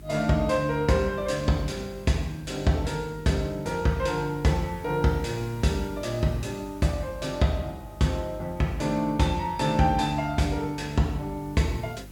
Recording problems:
hum; 50 Hz, harmonics up to 400 Hz, SNR 19 dB
background hiss; slope -3 dB per octave, SNR 27 dB

